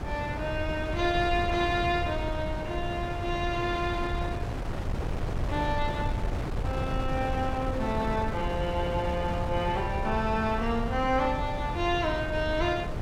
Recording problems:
wind on the microphone; below 280 Hz, SNR 4 dB

